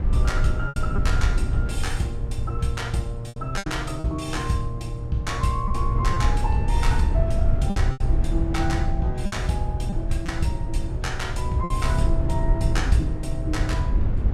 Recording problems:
low-frequency rumble; below 84 Hz, SNR -1 dB
packet loss; 5% of the sound replaced, filled with repeated pitch periods

